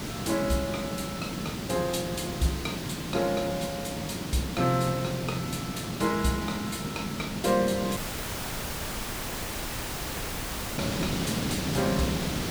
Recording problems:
hiss; SNR 2 dB
dropout; at 8 s for 3 s

